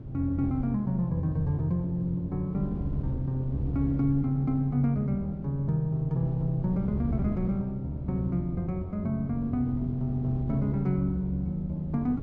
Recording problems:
wind noise; below 210 Hz, SNR 10 dB

